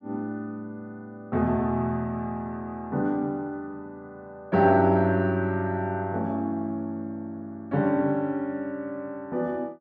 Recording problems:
none

